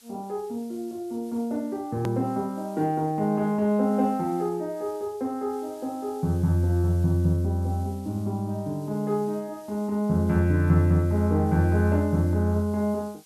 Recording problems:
background hiss; slope +2 dB per octave, SNR 27 dB
hard cut with a click; at 2 s

